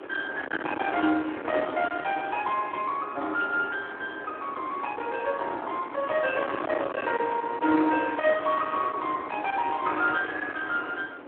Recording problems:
telephone audio; 260 Hz to 3.3 kHz, Speex
distortion; hard clipping, signal-to-distortion ratio 12 dB
wind noise; below 1.6 kHz, SNR 9 dB

